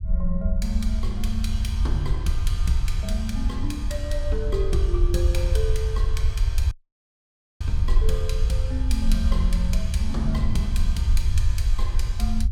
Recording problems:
low-frequency rumble; below 66 Hz, SNR -4 dB
audio cutting out; at 6.5 s for 1 s

